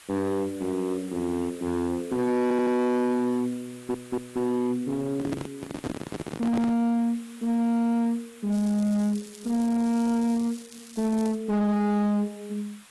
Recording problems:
codec artefacts; AAC, log-spectral distance 5 dB, nothing above 12 kHz
distortion; hard clipping, uneven, signal-to-distortion ratio 7 dB
background hiss; SNR 24 dB
audio stuttering; at 2.5 s and at 3.5 s
handling noise; from 5 to 7 s; peak 0 dB vs average level
crackling; from 8.5 to 11 s; loose cable, SNR 20 dB

